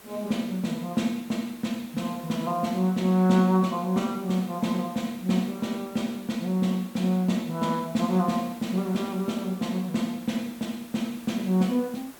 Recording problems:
hiss; slope -4 dB per octave, SNR 21 dB

